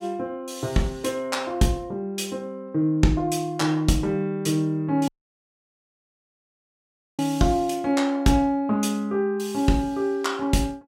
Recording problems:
audio cutting out; at 5 s for 2 s

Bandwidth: 17 kHz